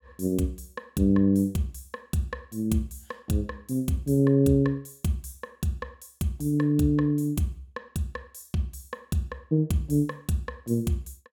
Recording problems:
none

